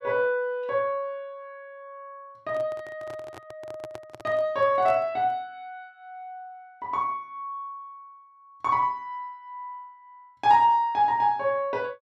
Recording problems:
microphone handling noise; from 2.5 to 5.5 s; peak -11 dB vs average level

